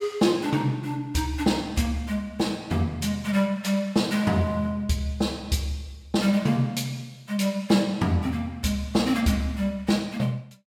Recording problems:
none

